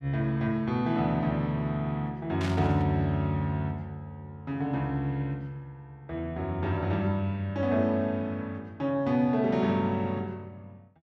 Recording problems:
static burst; at 2.5 s; peak -5 dB vs average level

